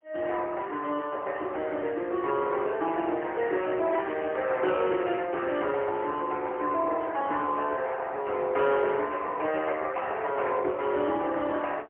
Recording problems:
phone line; 280 Hz to 3.4 kHz, AMR-NB, then MP3

